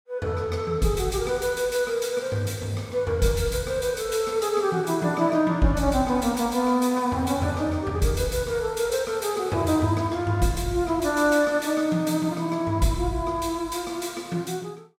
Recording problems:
none

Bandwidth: 16.5 kHz